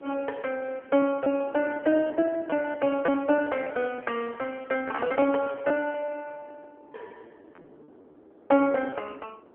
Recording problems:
phone line; 240 Hz to 3.3 kHz, AMR-NB
wind noise; below 560 Hz, SNR 23 dB
packet loss; 15% of the sound replaced, filled with repeated pitch periods

